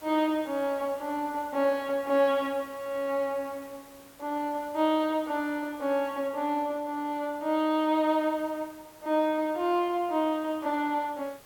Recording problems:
background hiss; slope -3 dB per octave, SNR 23 dB

